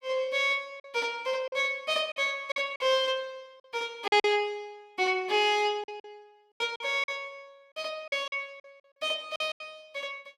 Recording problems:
packet loss; 8% of the sound replaced, filled with silence

